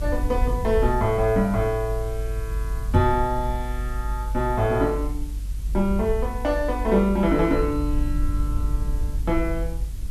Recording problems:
background hiss; slope +1 dB per octave, SNR 23 dB
rumble; below 54 Hz, strongest tone 48 Hz, SNR 5 dB
knock on the microphone; at 3 s; peak +8 dB vs average level

